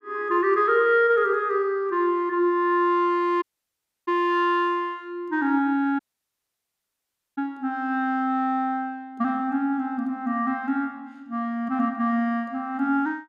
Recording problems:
dropout; at 3.5 s for 0.5 s and at 6 s for 1.5 s

